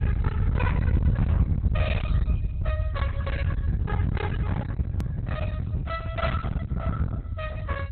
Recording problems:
codec artefacts; Opus, log-spectral distance 2 dB, nothing above 4 kHz
distorted audio; hard clipping, signal-to-distortion ratio 7 dB
background hiss; SNR 41 dB
rumble; below 130 Hz, SNR -8 dB
hard cut with a click; at 5 s

